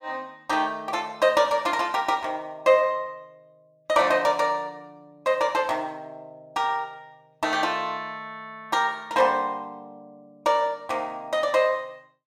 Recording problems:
none

